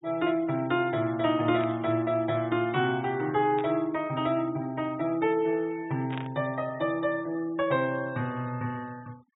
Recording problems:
treble cut off; nothing above 4 kHz
noise reduction artefacts; signal-to-artefact ratio 24 dB
static burst; at 1.5 s, at 3.5 s and at 6 s; peak -8 dB vs average level

